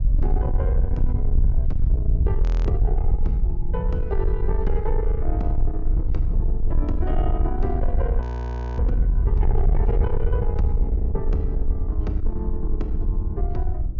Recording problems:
treble cut off; nothing above 6.8 kHz
distorted audio; soft clipping, signal-to-distortion ratio 10 dB
rumble; below 64 Hz, SNR -6 dB
wind noise; below 260 Hz, SNR 14 dB
audio freezing; at 2.5 s and at 8 s for 0.5 s

